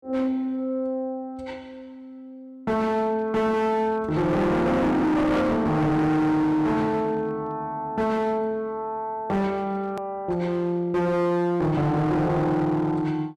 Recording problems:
distorted audio; hard clipping, signal-to-distortion ratio 7 dB
hard cut with a click; at 10 s

